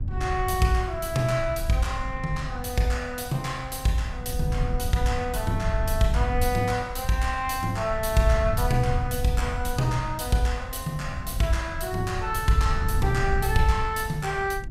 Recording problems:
wind on the microphone; below 92 Hz, SNR 6 dB

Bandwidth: 15.5 kHz